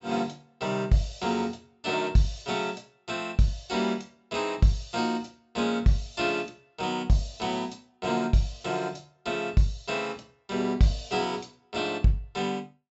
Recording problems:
treble missing; nothing above 7.7 kHz

